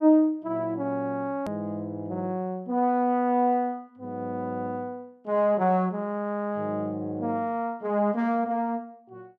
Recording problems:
hard cut with a click; at 1.5 s

